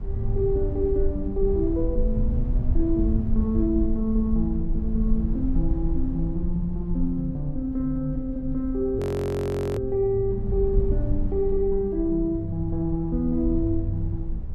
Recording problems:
rumble; below 64 Hz, SNR 4 dB
frozen audio; at 9 s for 1 s

